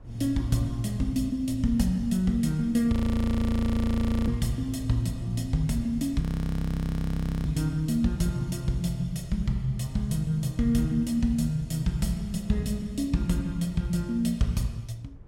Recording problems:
wind on the microphone; below 110 Hz, SNR 20 dB
audio freezing; at 3 s for 1.5 s and at 6 s for 1 s

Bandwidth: 16 kHz